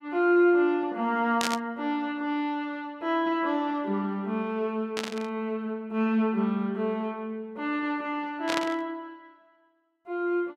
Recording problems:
burst of static; at 1.5 s, at 5 s and at 8.5 s; peak +2 dB vs average level

